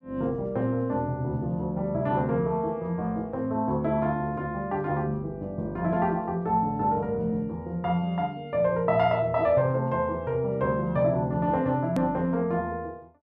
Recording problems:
edit click; at 12 s

